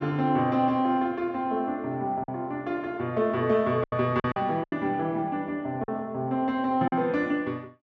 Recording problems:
lost packets; 5% of the sound replaced, filled with silence

